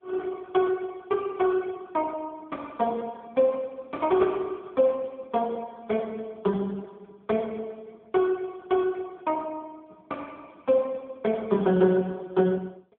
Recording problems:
phone line; 190 Hz to 2.9 kHz, AMR-NB

